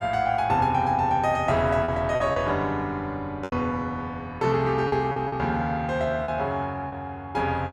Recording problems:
lost packets; 5% of the sound replaced, filled with repeated pitch periods

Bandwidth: 14 kHz